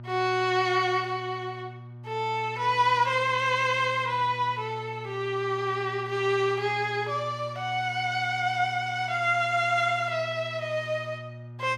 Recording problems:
hum; 60 Hz, harmonics up to 600 Hz, SNR 15 dB

